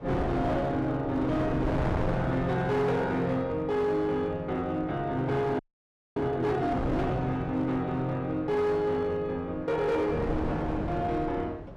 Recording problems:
distortion; hard clipping, signal-to-distortion ratio 10 dB
wind noise; below 540 Hz, SNR 7 dB
audio freezing; at 5.5 s for 0.5 s

